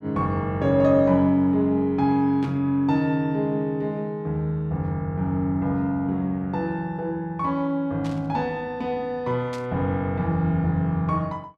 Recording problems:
static burst; at 2.5 s, at 8 s and at 9.5 s; peak -13 dB vs average level

